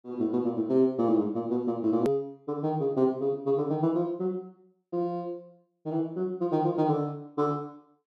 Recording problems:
edit click; at 2 s

